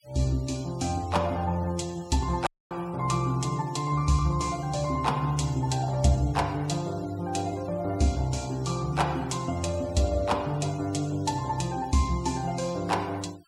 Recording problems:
denoising artefacts; signal-to-artefact ratio 21 dB
dropout; at 2.5 s

